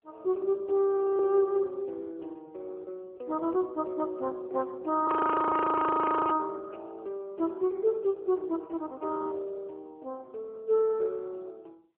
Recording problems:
phone line; 340 Hz to 2 kHz, AMR-NB
frozen audio; at 1 s and at 5 s for 1 s

